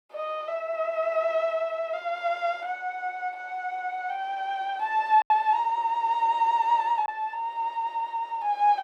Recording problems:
lost packets; 1.2% of the sound replaced, filled with silence

